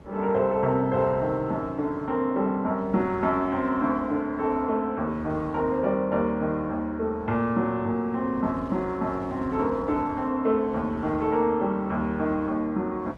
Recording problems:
lossy codec; Opus, log-spectral distance 2 dB
wind on the microphone; below 430 Hz, SNR 19 dB

